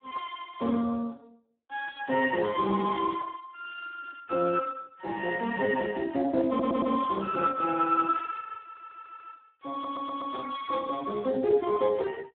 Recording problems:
telephone audio; 220 Hz to 2 kHz, Speex
stutter; at 6.5 s, at 8.5 s and at 9.5 s

